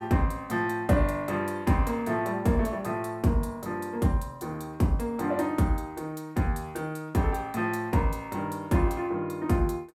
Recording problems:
none

